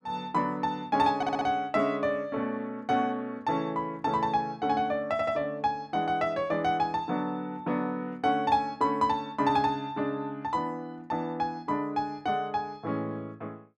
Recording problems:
stutter; at 1 s and at 5 s

